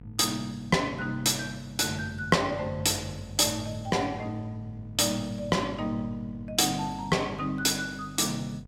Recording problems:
hum; 50 Hz, harmonics up to 700 Hz, SNR 18 dB

